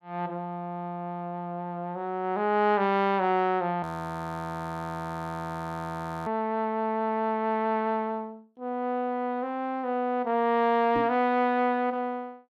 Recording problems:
frozen audio; at 4 s for 2.5 s
knock on the microphone; at 11 s; peak -2 dB vs average level

